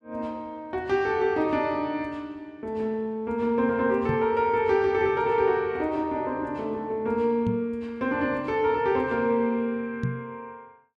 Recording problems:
knock on the microphone; at 4 s, at 7.5 s and at 10 s; peak +1 dB vs average level

